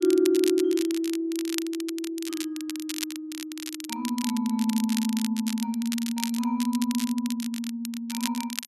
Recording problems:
crackling; vinyl, SNR 8 dB

